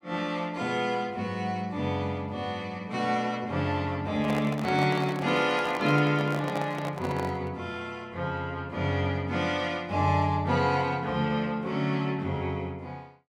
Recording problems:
microphone handling noise; from 4 to 7.5 s; peak -3 dB vs average level

